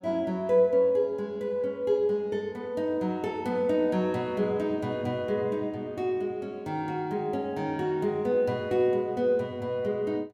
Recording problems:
none

